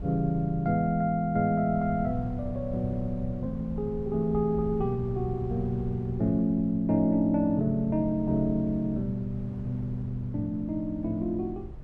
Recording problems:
wind on the microphone; below 130 Hz, SNR 13 dB

